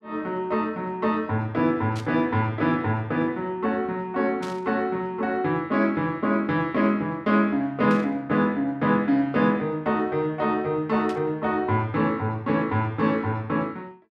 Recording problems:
burst of static; 4 times, first at 2 s; peak -11 dB vs average level

